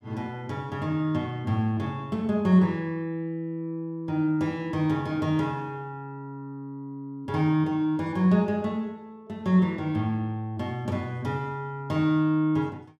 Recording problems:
none

